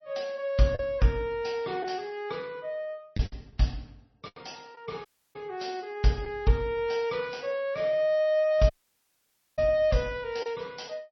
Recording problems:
lossy codec; MP3, log-spectral distance 3 dB, nothing above 5.8 kHz
lost packets; 3% of the sound replaced, filled with the last packet
dropout; at 5 s and at 8.5 s for 1 s

